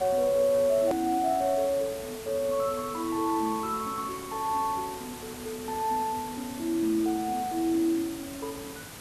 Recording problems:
background hiss; slope -3 dB per octave, SNR 13 dB
hard cut with a click; at 1 s

